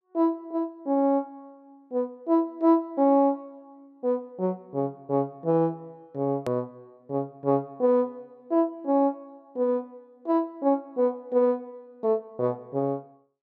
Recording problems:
edit click; at 6.5 s

